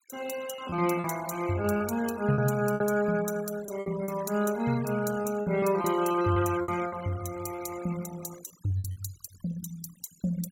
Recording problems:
noise reduction artefacts; signal-to-artefact ratio 16 dB
packet loss; 8% of the sound replaced, filled with repeated pitch periods

